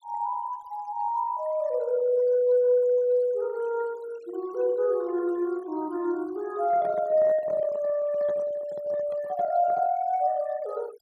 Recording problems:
noise reduction artefacts; signal-to-artefact ratio 26 dB
handling noise; from 6.5 to 10 s; peak -12 dB vs average level

